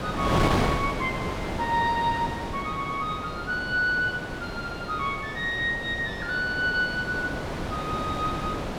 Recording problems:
wind on the microphone; below 1.1 kHz, SNR 3 dB

